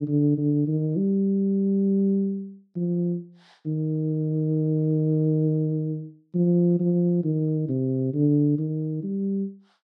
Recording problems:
none

